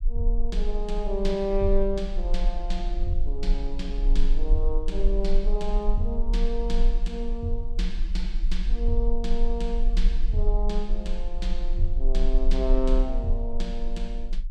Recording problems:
low-frequency rumble; below 36 Hz, strongest tone 20 Hz, SNR -3 dB

